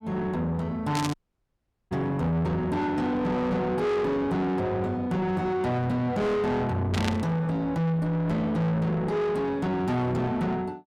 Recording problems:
distorted audio; soft clipping, signal-to-distortion ratio 8 dB
static burst; at 1 s and at 7 s; peak 0 dB vs average level
dropout; at 1 s for 1 s

